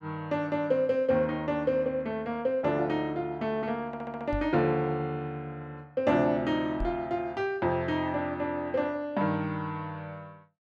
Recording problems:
audio stuttering; at 4 s
microphone thump; at 4.5 s and at 7 s; peak -2 dB vs average level

